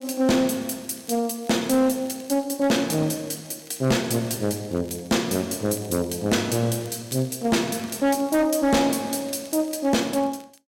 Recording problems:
distortion; hard clipping, uneven, signal-to-distortion ratio 11 dB
crackling; vinyl, SNR 27 dB

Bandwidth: 16 kHz